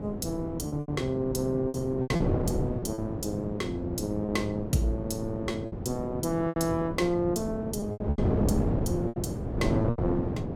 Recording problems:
wind noise; below 370 Hz, SNR 1 dB
lost packets; 9% of the sound replaced, filled with repeated pitch periods

